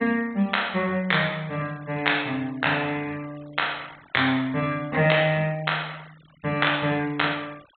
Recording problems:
low-pass filter; nothing above 4 kHz
denoising artefacts; signal-to-artefact ratio 24 dB

